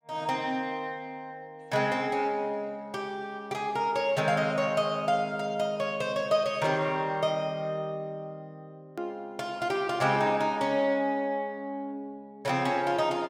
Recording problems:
edit click; at 9 s

